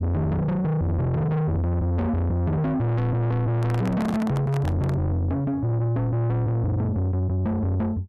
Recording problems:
distorted audio; soft clipping, signal-to-distortion ratio 6 dB
handling noise; from 3.5 to 5 s; peak +2 dB vs average level

